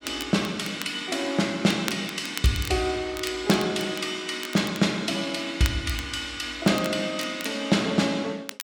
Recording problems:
crackle; vinyl, SNR 13 dB

